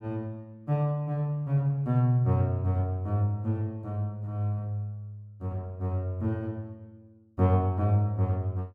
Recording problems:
none

